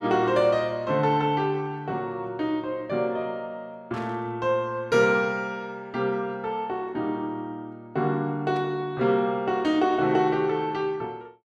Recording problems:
burst of static; at 4 s and at 8.5 s; peak -15 dB vs average level

